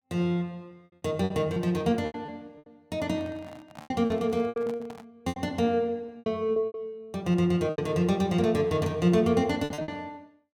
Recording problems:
lost packets; 11% of the sound replaced, filled with repeated pitch periods
microphone handling noise; from 3 to 5 s; peak -11 dB vs average level

